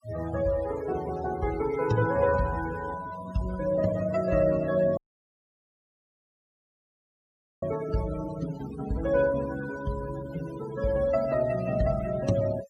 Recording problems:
noise reduction artefacts; signal-to-artefact ratio 15 dB
dropout; at 5 s for 2.5 s

